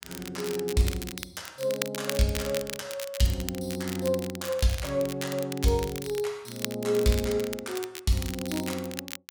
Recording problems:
crackle; vinyl, SNR 9 dB

